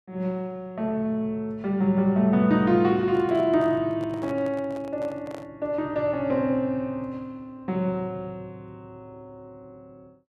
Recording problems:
handling noise; from 3 to 5.5 s; peak -11 dB vs average level

